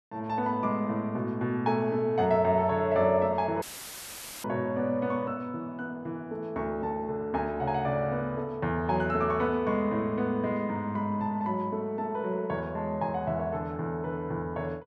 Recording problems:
dropout; at 3.5 s for 1 s; filled with static

